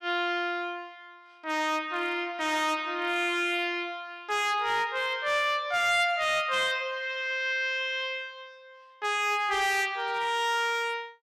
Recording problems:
distortion; hard clipping, signal-to-distortion ratio 12 dB

